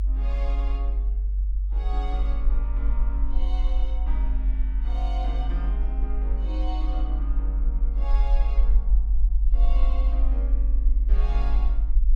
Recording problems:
low-frequency rumble; below 48 Hz, strongest tone 48 Hz, SNR -14 dB

